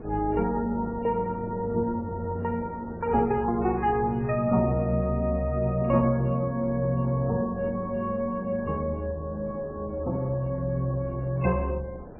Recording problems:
lossy codec; MP3, log-spectral distance 2 dB, nothing above 2.7 kHz
wind noise; below 530 Hz, SNR 17 dB

